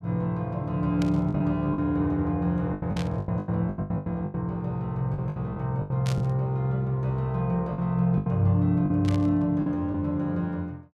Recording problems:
packet loss; 11% of the sound replaced, filled with the last packet
burst of static; 4 times, first at 1 s; peak -6 dB vs average level

